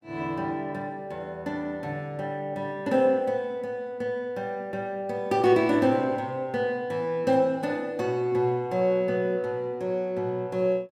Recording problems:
none

